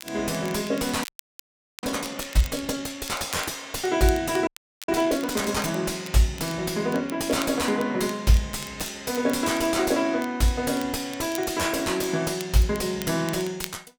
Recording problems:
distortion; soft clipping, signal-to-distortion ratio 8 dB
crackle; vinyl, SNR 17 dB
audio freezing; at 1 s for 1 s and at 4.5 s

